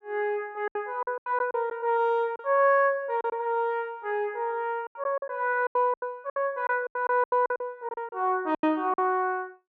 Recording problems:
packet loss; 12% of the sound replaced, filled with silence

